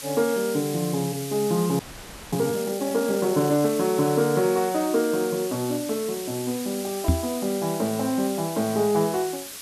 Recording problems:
background hiss; slope +2 dB per octave, SNR 11 dB
frozen audio; at 2 s for 0.5 s
knock on the microphone; at 7 s; peak +7 dB vs average level

